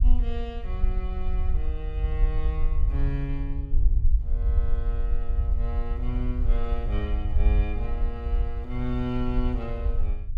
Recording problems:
low-frequency rumble; below 56 Hz, SNR -7 dB

